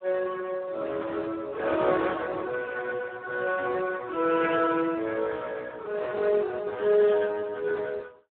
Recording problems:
telephone audio; 320 Hz to 2.5 kHz, Speex

